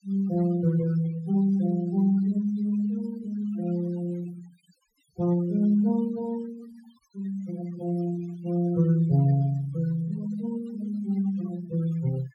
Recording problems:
denoising artefacts; signal-to-artefact ratio 20 dB

